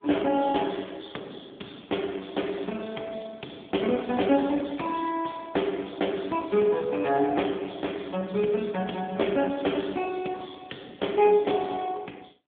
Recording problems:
phone line; 190 Hz to 3.6 kHz, AMR-NB

